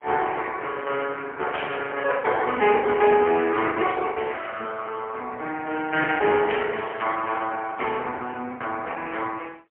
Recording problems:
phone line; 260 Hz to 3.1 kHz, AMR-NB, then MP3
packet loss; 11% of the sound replaced, filled with the last packet
burst of static; at 1.5 s and at 6.5 s; peak -2 dB vs average level

